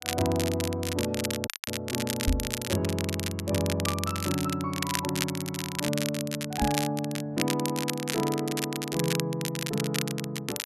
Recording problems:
crackling; vinyl, SNR 3 dB
dropout; at 1.5 s
microphone bump; at 2.5 s and at 6.5 s; peak +7 dB vs average level

